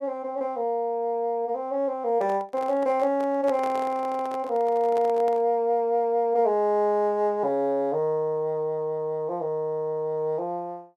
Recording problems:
microphone handling noise; from 2 to 5.5 s; peak -7 dB vs average level

